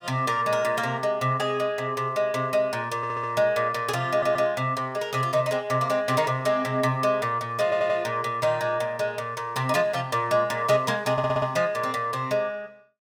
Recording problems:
stutter; 4 times, first at 3 s

